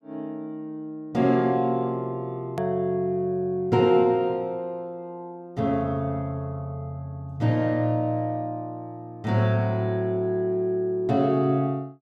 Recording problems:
click at an edit; at 2.5 s

